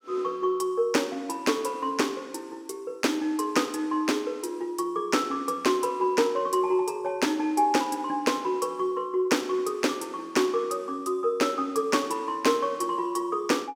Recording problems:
none

